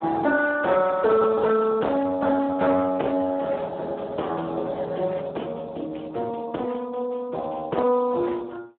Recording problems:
telephone audio; 240 Hz to 3.5 kHz, Speex
distorted audio; hard clipping, signal-to-distortion ratio 14 dB

